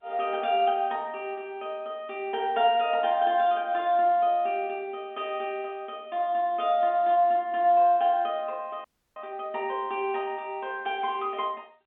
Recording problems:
phone line; 190 Hz to 3.7 kHz, G.711
frozen audio; at 9 s

